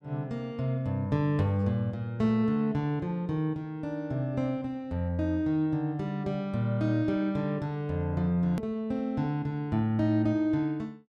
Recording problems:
edit click; at 8.5 s

